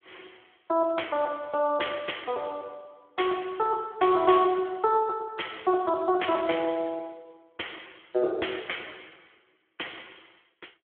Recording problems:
phone line; 320 Hz to 3.3 kHz, Speex

